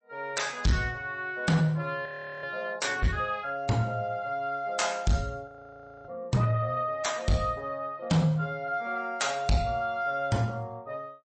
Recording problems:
lossy codec; MP3, log-spectral distance 2 dB, nothing above 8.2 kHz
distortion; soft clipping, signal-to-distortion ratio 11 dB
frozen audio; at 2 s and at 5.5 s for 0.5 s

